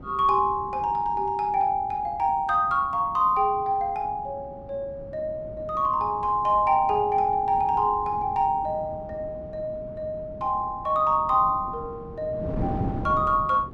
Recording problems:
wind on the microphone; below 320 Hz, SNR 14 dB

